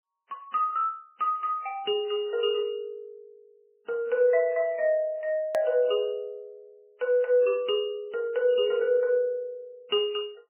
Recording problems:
lossy codec; MP3, log-spectral distance 2 dB, nothing above 2.8 kHz
hard cut with a click; at 5.5 s

